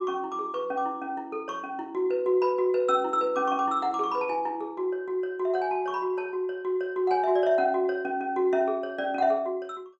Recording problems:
none

